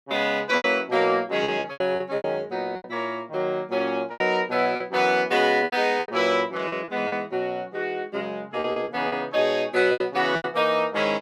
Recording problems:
packet loss; 10% of the sound replaced, filled with repeated pitch periods

